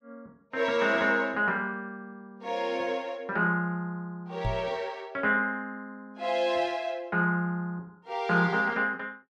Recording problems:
microphone thump; at 4.5 s; peak 0 dB vs average level

